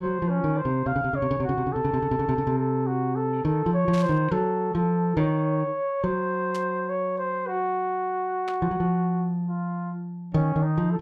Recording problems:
static burst; at 4 s, at 6.5 s and at 8.5 s; peak -10 dB vs average level

